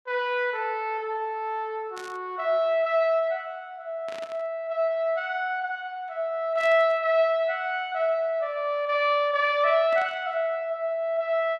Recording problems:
static burst; 4 times, first at 2 s; peak -13 dB vs average level

